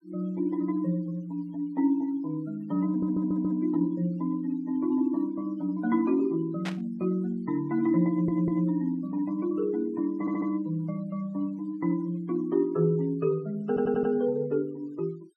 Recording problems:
denoising artefacts; signal-to-artefact ratio 28 dB
audio stuttering; 4 times, first at 3 s
burst of static; at 6.5 s; peak -4 dB vs average level

